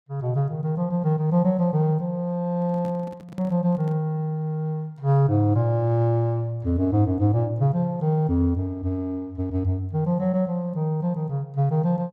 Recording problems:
microphone handling noise; from 2.5 to 4 s; peak -10 dB vs average level

